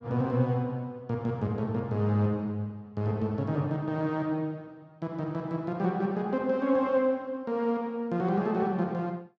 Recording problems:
none

